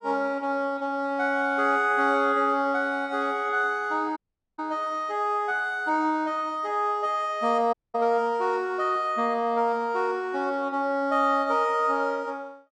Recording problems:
dropout; at 4 s and at 7.5 s

